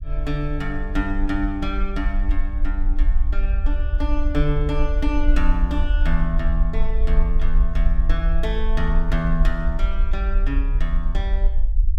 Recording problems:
low-frequency rumble; below 48 Hz, strongest tone 22 Hz, SNR -4 dB

